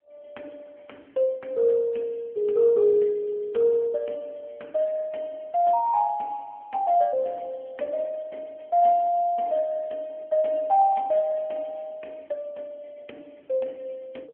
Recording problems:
phone line; 240 Hz to 3.5 kHz, AMR-NB

